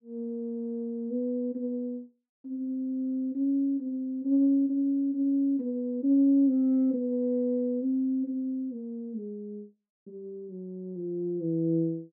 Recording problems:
none

